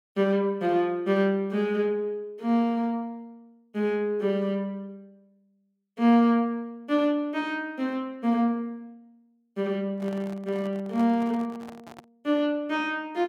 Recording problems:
microphone handling noise; from 10 to 12 s; peak -11 dB vs average level

